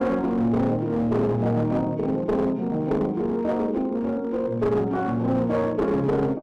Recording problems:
distortion; hard clipping, uneven, signal-to-distortion ratio 11 dB

